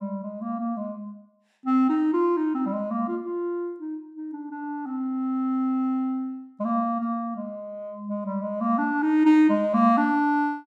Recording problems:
none

